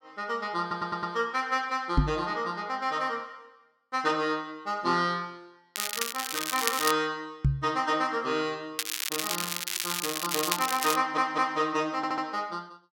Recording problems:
stutter; at 0.5 s, at 11 s and at 12 s
microphone bump; at 2 s and at 7.5 s; peak +9 dB vs average level
crackling; from 6 to 7 s and from 9 to 11 s; loose cable, SNR 1 dB

